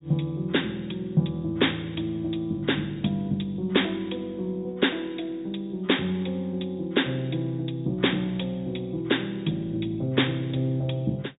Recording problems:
treble missing; nothing above 4 kHz

